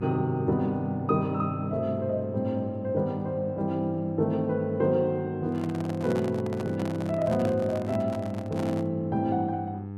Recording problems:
hum; 50 Hz, harmonics up to 900 Hz, SNR 10 dB
microphone handling noise; from 5.5 to 9 s; peak -5 dB vs average level

